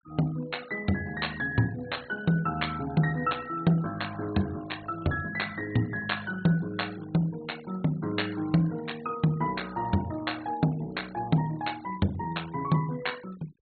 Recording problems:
low-pass filter; nothing above 4.4 kHz
noise reduction artefacts; signal-to-artefact ratio 19 dB

